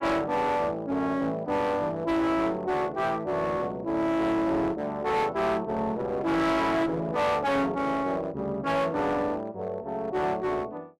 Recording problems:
distorted audio; hard clipping, uneven, signal-to-distortion ratio 7 dB

